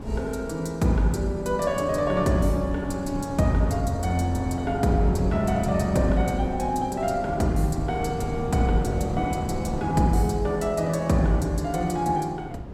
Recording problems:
wind noise; below 330 Hz, SNR 10 dB

